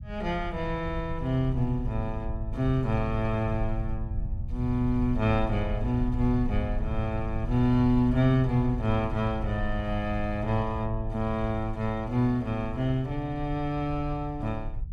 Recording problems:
low-frequency rumble; below 80 Hz, SNR 8 dB

